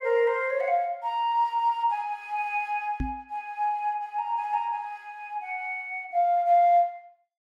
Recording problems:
microphone bump; at 3 s; peak -1 dB vs average level

